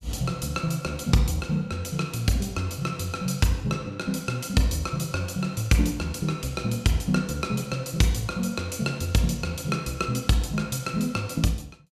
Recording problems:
none

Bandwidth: 14.5 kHz